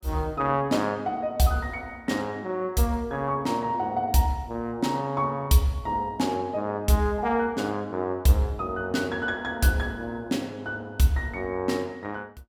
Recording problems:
none

